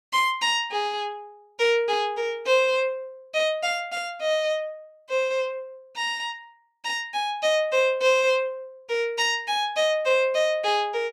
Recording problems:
none

